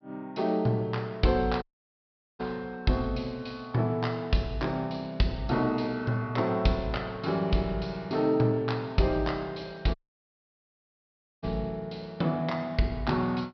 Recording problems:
treble missing; nothing above 5.5 kHz
dropout; at 1.5 s for 1 s and at 10 s for 1.5 s

